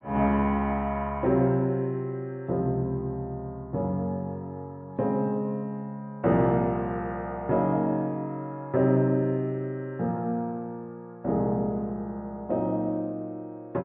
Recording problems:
low-pass filter; nothing above 3.9 kHz

